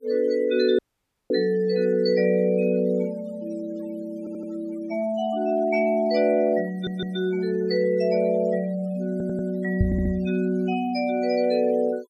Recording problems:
denoising artefacts; signal-to-artefact ratio 23 dB
audio cutting out; at 1 s for 0.5 s
stutter; 4 times, first at 4 s
microphone bump; at 10 s; peak +5 dB vs average level

